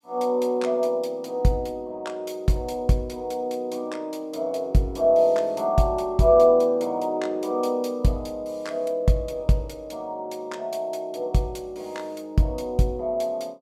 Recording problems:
none

